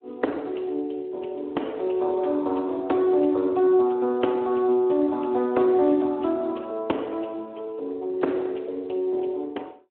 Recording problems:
telephone audio; 220 Hz to 2.9 kHz, Speex

